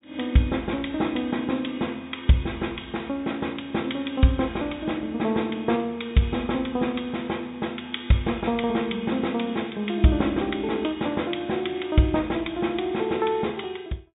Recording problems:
low-pass filter; nothing above 4 kHz

